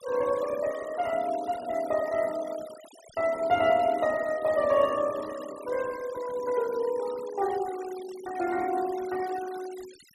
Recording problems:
noise reduction artefacts; signal-to-artefact ratio 18 dB

